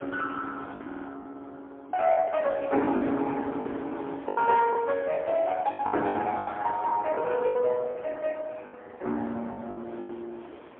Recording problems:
telephone audio; 240 Hz to 3.3 kHz, AMR-NB, then MP3
wind on the microphone; below 970 Hz, SNR 20 dB
lost packets; 10% of the sound replaced, filled with the last packet
stutter; at 1 s

